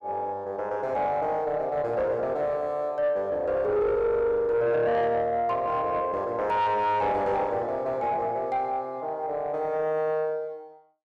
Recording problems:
distortion; soft clipping, signal-to-distortion ratio 11 dB

